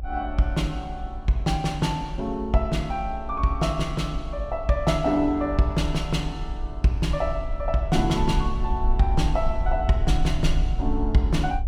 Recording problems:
rumble; below 56 Hz, SNR 6 dB

